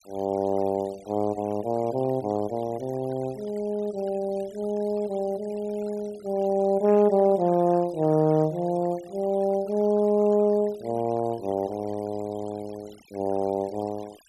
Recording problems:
denoising artefacts; signal-to-artefact ratio 25 dB

